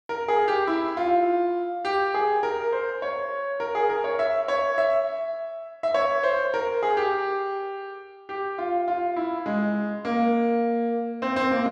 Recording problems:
none

